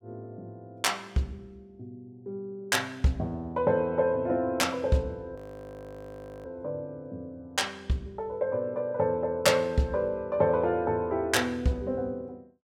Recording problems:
frozen audio; at 5.5 s for 1 s

